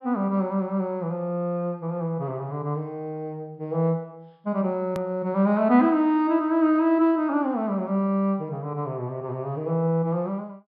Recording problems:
treble cut off; nothing above 5.5 kHz
hard cut with a click; at 5 s

